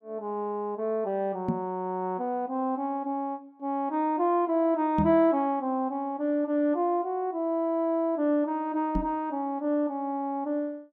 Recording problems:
microphone thump; at 1.5 s, at 5 s and at 9 s; peak +4 dB vs average level

